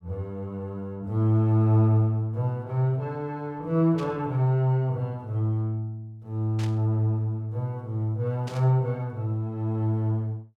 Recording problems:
burst of static; at 4 s, at 6.5 s and at 8.5 s; peak -11 dB vs average level

